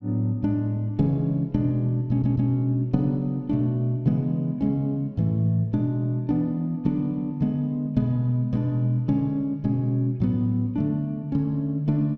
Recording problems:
stutter; at 2 s

